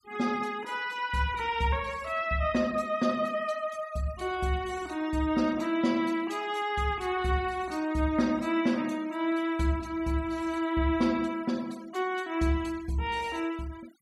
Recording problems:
denoising artefacts; signal-to-artefact ratio 21 dB

